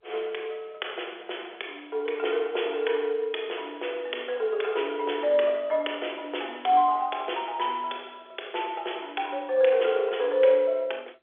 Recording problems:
phone line; 320 Hz to 3.5 kHz, G.711

